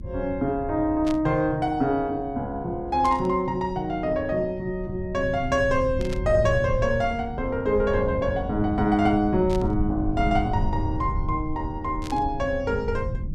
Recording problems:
hum; 50 Hz, harmonics up to 350 Hz, SNR 20 dB
low-frequency rumble; below 110 Hz, SNR 9 dB
static burst; 5 times, first at 1 s; peak -10 dB vs average level

